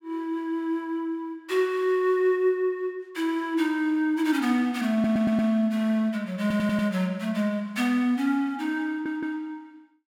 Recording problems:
stutter; at 5 s, at 6.5 s and at 9 s

